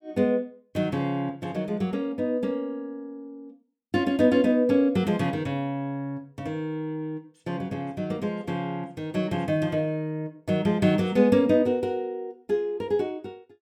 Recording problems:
none

